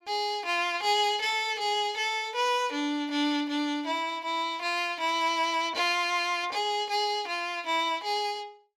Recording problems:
none

